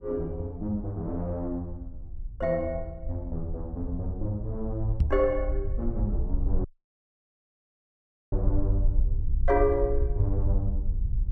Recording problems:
rumble; below 62 Hz, SNR 2 dB
microphone thump; at 5 s; peak +9 dB vs average level
audio cutting out; at 6.5 s for 1.5 s

